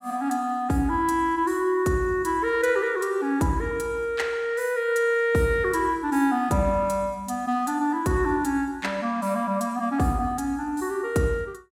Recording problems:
none

